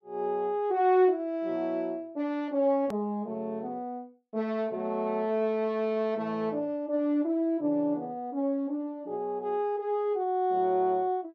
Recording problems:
click at an edit; at 3 s

